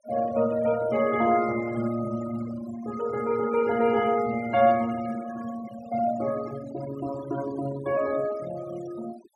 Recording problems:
noise reduction artefacts; signal-to-artefact ratio 16 dB

